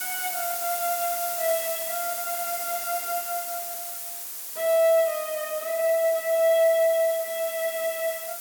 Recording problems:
background hiss; slope +1 dB per octave, SNR 5 dB

